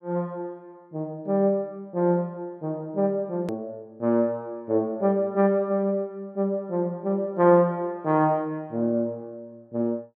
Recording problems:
edit click; at 3.5 s

